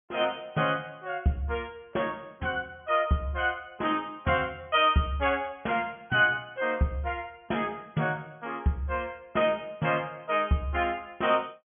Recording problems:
low-pass filter; nothing above 3.4 kHz

